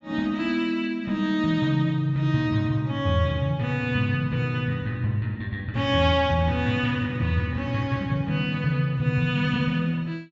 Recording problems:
low-pass filter; nothing above 8 kHz

